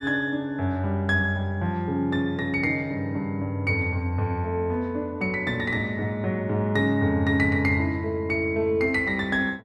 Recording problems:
none

